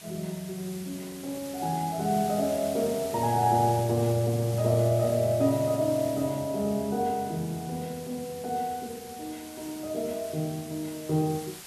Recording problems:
hiss; slope 0 dB per octave, SNR 15 dB

